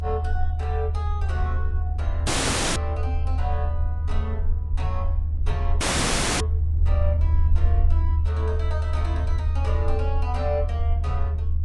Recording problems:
codec artefacts; Vorbis, log-spectral distance 2 dB, nothing above 10.4 kHz
hum; 60 Hz, harmonics up to 1.4 kHz, SNR 20 dB
low-frequency rumble; below 78 Hz, strongest tone 78 Hz, SNR -9 dB
audio cutting out; at 2.5 s and at 6 s for 0.5 s

